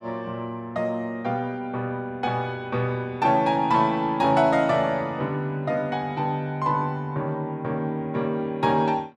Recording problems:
none

